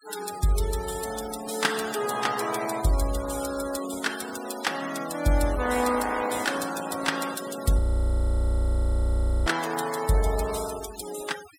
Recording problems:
noise reduction artefacts; signal-to-artefact ratio 12 dB
frozen audio; at 8 s for 1.5 s

